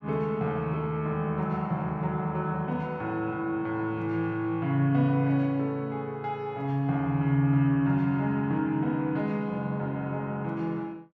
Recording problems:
none

